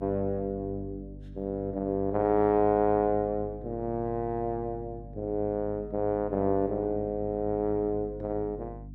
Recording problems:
hum; 50 Hz, harmonics up to 300 Hz, SNR 15 dB

